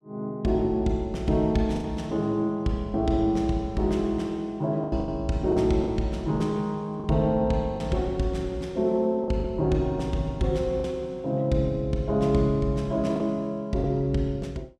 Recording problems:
packet loss; 4% of the sound replaced, filled with the last packet

